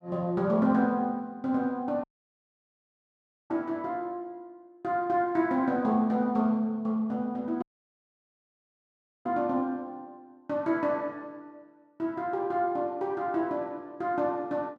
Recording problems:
dropout; at 2 s for 1.5 s and at 7.5 s for 1.5 s

